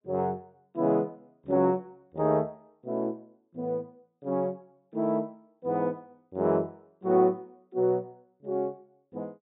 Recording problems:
treble cut off; nothing above 4 kHz

